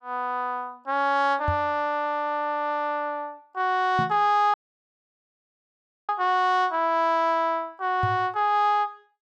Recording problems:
knock on the microphone; at 1.5 s, at 4 s and at 8 s; peak 0 dB vs average level
audio cutting out; at 4.5 s for 1.5 s

